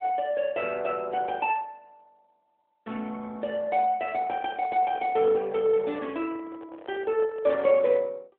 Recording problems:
phone line; 260 Hz to 3.5 kHz, AMR-NB
handling noise; from 4 to 7.5 s; peak -11 dB vs average level

